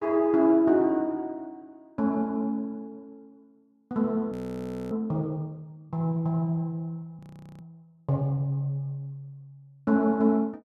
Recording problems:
frozen audio; at 4.5 s for 0.5 s and at 7 s

